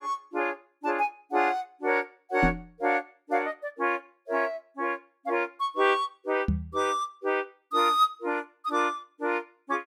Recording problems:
knock on the microphone; at 2.5 s and at 6.5 s; peak +6 dB vs average level

